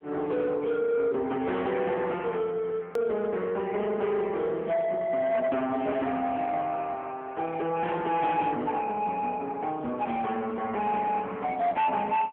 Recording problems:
phone line; 220 Hz to 3.4 kHz, AMR-NB
distortion; soft clipping, signal-to-distortion ratio 12 dB
hard cut with a click; at 3 s

